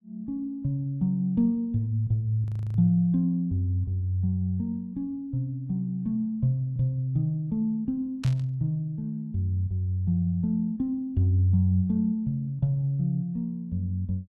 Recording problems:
frozen audio; at 2.5 s
burst of static; at 8 s; peak -9 dB vs average level

